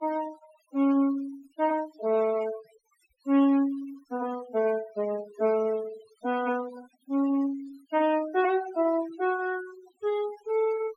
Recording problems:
denoising artefacts; signal-to-artefact ratio 17 dB

